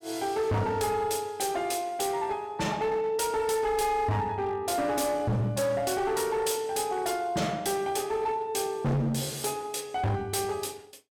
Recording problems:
distorted audio; hard clipping, signal-to-distortion ratio 7 dB

